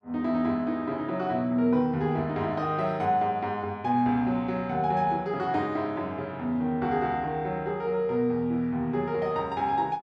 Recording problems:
none

